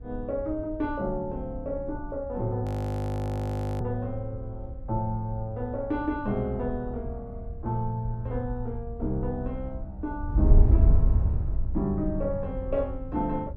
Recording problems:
wind noise; below 80 Hz, SNR 0 dB
audio freezing; at 2.5 s for 1 s

